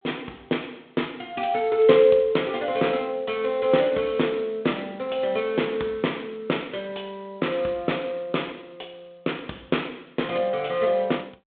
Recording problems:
phone line; 190 Hz to 3.7 kHz, G.726

